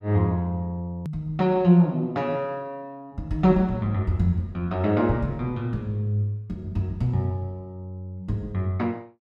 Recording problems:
click at an edit; at 1 s

